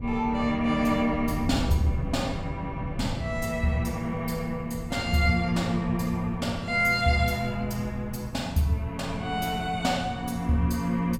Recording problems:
wind noise; below 160 Hz, SNR 10 dB

